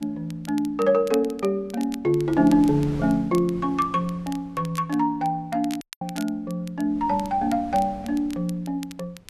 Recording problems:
wind noise; below 400 Hz, SNR 20 dB
crackle; vinyl, SNR 21 dB
audio cutting out; at 6 s

